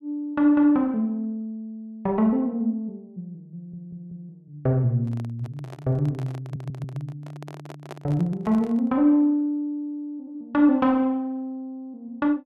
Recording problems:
audio stuttering; at 3.5 s and at 6.5 s
handling noise; from 5 to 9 s; peak -9 dB vs average level

